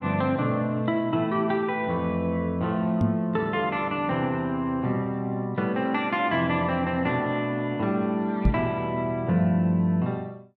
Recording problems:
microphone thump; at 3 s and at 8.5 s; peak +6 dB vs average level

